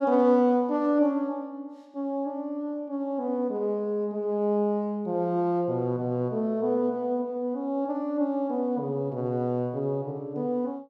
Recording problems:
none

